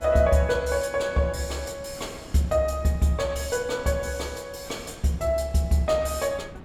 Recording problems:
wind on the microphone; below 450 Hz, SNR 21 dB

